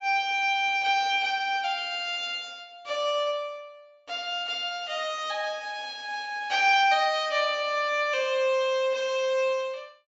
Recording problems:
treble cut off; nothing above 8 kHz

